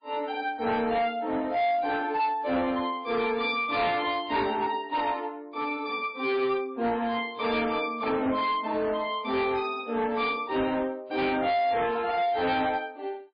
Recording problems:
lossy codec; MP3, log-spectral distance 3 dB, nothing above 4.2 kHz
distorted audio; hard clipping, signal-to-distortion ratio 10 dB

